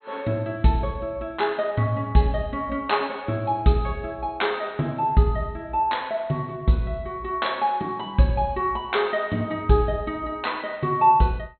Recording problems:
treble cut off; nothing above 4.2 kHz

